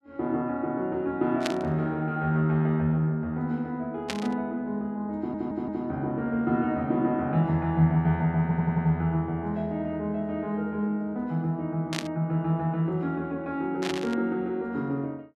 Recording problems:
burst of static; 4 times, first at 1.5 s; peak +1 dB vs average level
audio stuttering; at 5 s and at 8.5 s

